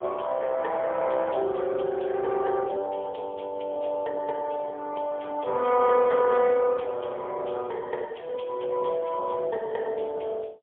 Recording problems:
phone line; 320 Hz to 3.4 kHz, AMR-NB, then MP3

